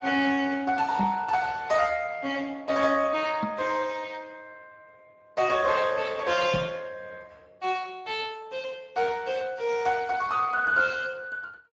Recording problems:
lossy compression; Speex, log-spectral distance 4 dB
microphone bump; at 1 s, at 3.5 s and at 6.5 s; peak +1 dB vs average level

